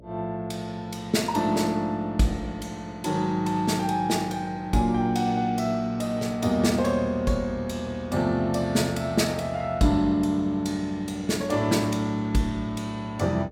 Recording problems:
hum; 60 Hz, harmonics up to 660 Hz, SNR 22 dB

